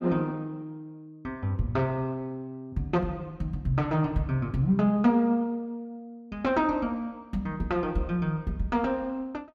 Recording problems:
none

